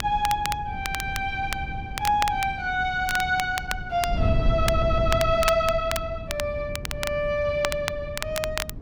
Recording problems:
wind noise; below 130 Hz, SNR 7 dB
crackling; vinyl, SNR 8 dB
stutter; at 4.5 s

